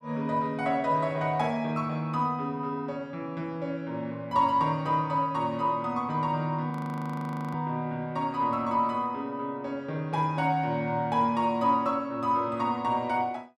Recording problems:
audio freezing; at 6.5 s for 1 s

